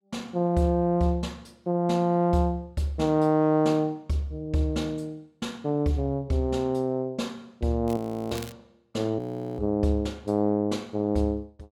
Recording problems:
crackling; at 8 s; loose cable, SNR 19 dB
audio freezing; at 8 s and at 9 s

